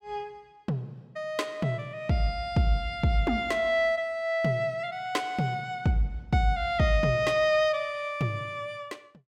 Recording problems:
none

